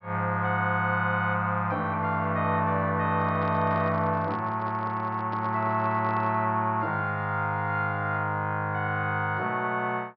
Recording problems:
treble missing; nothing above 5.5 kHz
handling noise; from 3 to 6.5 s; peak -10 dB vs average level

